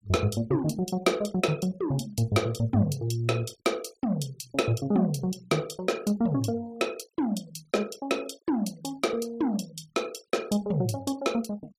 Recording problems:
denoising artefacts; signal-to-artefact ratio 22 dB

